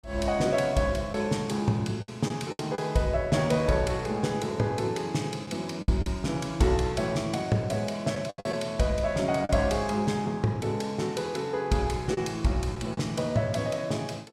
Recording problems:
packet loss; 4% of the sound replaced, filled with the last packet

